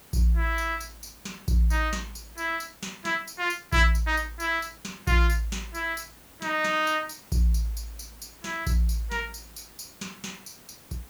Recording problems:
background hiss; slope -3 dB per octave, SNR 23 dB

